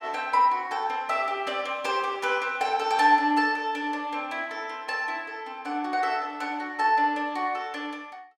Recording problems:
none

